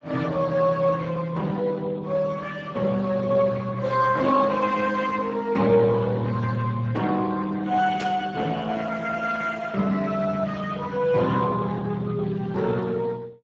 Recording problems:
lossy compression; Speex, log-spectral distance 4 dB
burst of static; at 8 s; peak -7 dB vs average level

